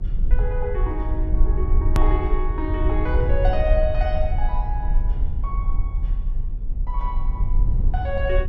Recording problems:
rumble; below 54 Hz, SNR -4 dB
hard cut with a click; at 2 s

